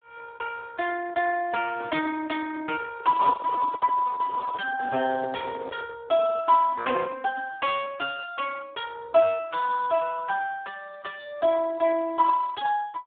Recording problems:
phone line; 240 Hz to 3.4 kHz, Speex
handling noise; from 3 to 6 s; peak -3 dB vs average level

